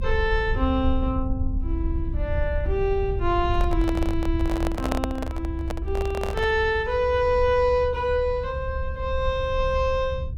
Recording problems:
low-frequency rumble; below 70 Hz, SNR 5 dB
microphone handling noise; from 3.5 to 6.5 s; peak +2 dB vs average level

